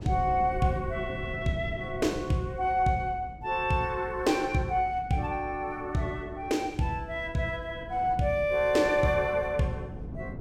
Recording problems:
wind on the microphone; below 210 Hz, SNR 14 dB

